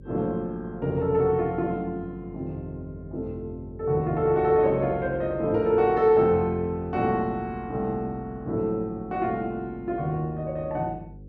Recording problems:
electrical hum; 50 Hz, harmonics up to 550 Hz, SNR 20 dB

